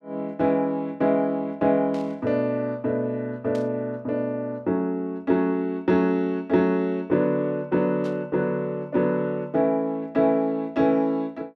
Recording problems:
static burst; at 2 s, at 3.5 s and at 8 s; peak -16 dB vs average level

